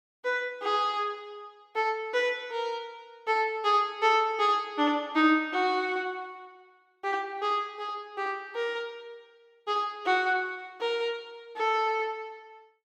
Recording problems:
none

